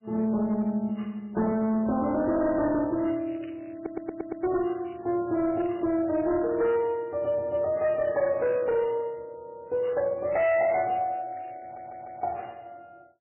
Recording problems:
lossy compression; MP3, log-spectral distance 3 dB, nothing above 2.8 kHz
distorted audio; hard clipping, uneven, signal-to-distortion ratio 12 dB
crackle; at 1.5 s, from 3 to 6 s and from 10 to 13 s; loose cable, SNR 30 dB
audio stuttering; at 4 s and at 12 s

